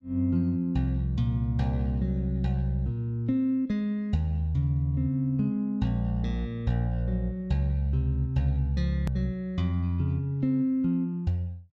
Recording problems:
edit click; at 9 s

